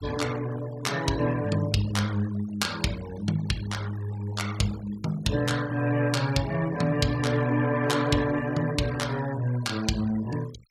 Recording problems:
noise reduction artefacts; signal-to-artefact ratio 17 dB

